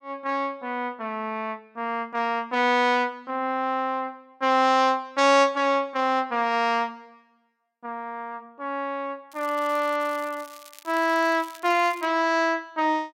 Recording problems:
crackle; from 9.5 to 12 s; loose cable, SNR 23 dB

